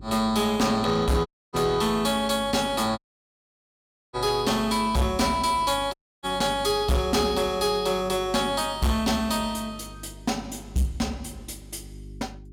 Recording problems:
distorted audio; hard clipping, signal-to-distortion ratio 11 dB
electrical hum; 50 Hz, harmonics up to 400 Hz, SNR 20 dB
audio cutting out; at 1.5 s, at 3 s for 1 s and at 6 s

